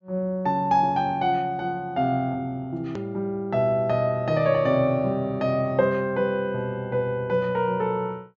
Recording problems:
treble missing; nothing above 7.4 kHz
edit click; at 3 s

